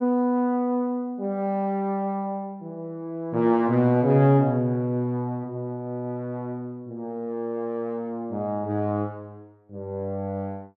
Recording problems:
none

